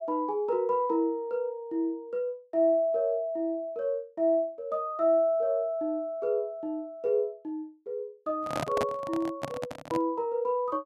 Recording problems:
handling noise; from 8.5 to 10 s; peak +1 dB vs average level

